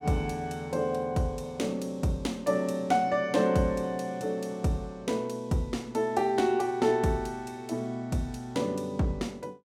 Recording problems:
none

